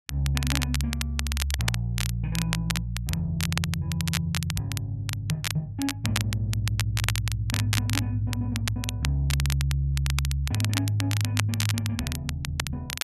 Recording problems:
crackle; vinyl, SNR 4 dB

